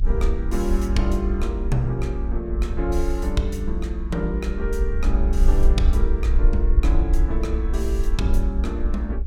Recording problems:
rumble; below 58 Hz, SNR -3 dB

